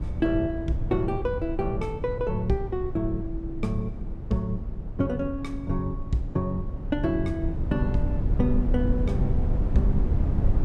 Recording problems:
rumble; below 110 Hz, SNR 1 dB

